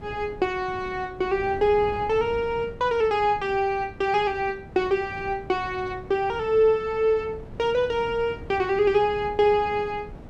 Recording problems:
wind on the microphone; below 340 Hz, SNR 17 dB

